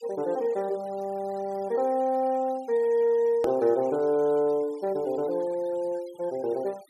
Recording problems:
noise reduction artefacts; signal-to-artefact ratio 26 dB
click at an edit; at 3.5 s

